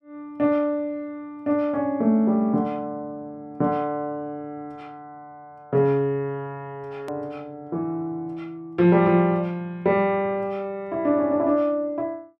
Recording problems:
hard cut with a click; at 7 s

